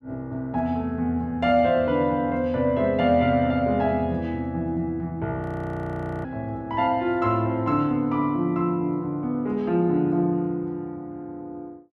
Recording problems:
frozen audio; at 5.5 s for 1 s

